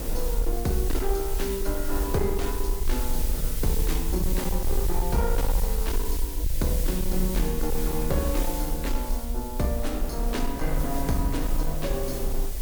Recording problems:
distortion; hard clipping, signal-to-distortion ratio 12 dB
background hiss; slope +4 dB per octave, SNR 5 dB
rumble; below 48 Hz, SNR 1 dB
wind noise; below 580 Hz, SNR 11 dB

